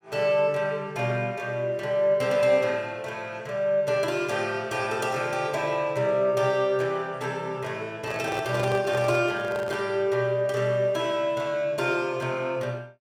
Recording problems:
handling noise; from 8 to 10 s; peak -4 dB vs average level

